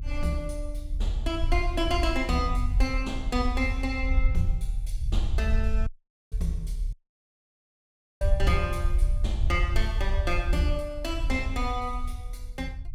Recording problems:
low-frequency rumble; below 62 Hz, SNR -1 dB
audio cutting out; at 6 s and at 7 s for 1.5 s

